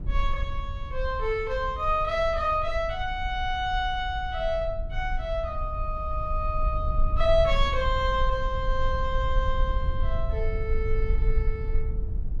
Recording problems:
low-frequency rumble; below 54 Hz, SNR 3 dB

